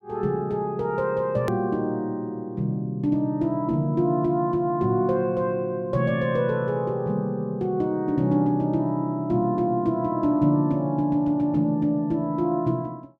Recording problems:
hard cut with a click; at 1.5 s

